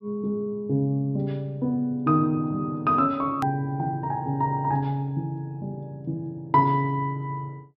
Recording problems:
treble missing; nothing above 5.3 kHz
edit click; at 3.5 s

